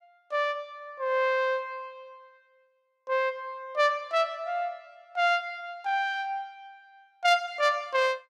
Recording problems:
none

